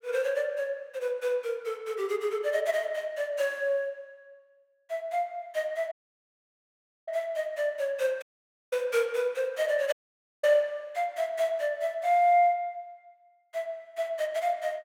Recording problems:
audio cutting out; at 6 s for 1 s, at 8 s for 0.5 s and at 10 s for 0.5 s

